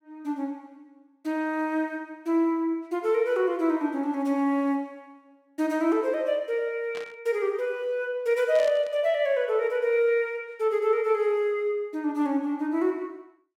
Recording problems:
static burst; at 7 s and at 8.5 s; peak -10 dB vs average level

